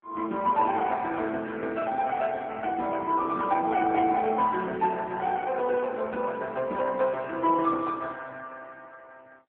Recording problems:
phone line; 190 Hz to 3.6 kHz, AMR-NB

